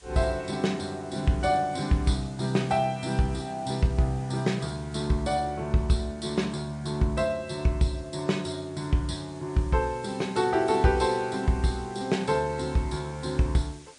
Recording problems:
lossy compression; MP3, log-spectral distance 4 dB, nothing above 9.5 kHz
hiss; slope 0 dB per octave, SNR 24 dB

